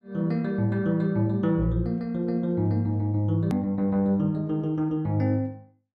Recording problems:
hard cut with a click; at 3.5 s

